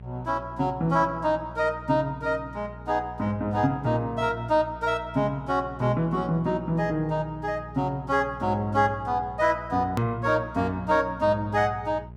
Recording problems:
hum; 60 Hz, harmonics up to 660 Hz, SNR 17 dB
click at an edit; at 10 s

